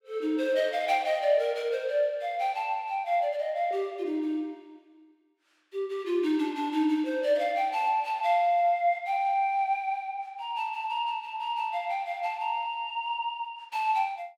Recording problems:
none

